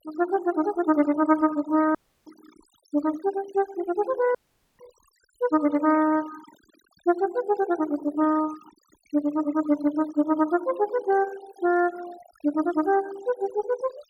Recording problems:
noise reduction artefacts; signal-to-artefact ratio 21 dB
audio cutting out; at 2 s and at 4.5 s

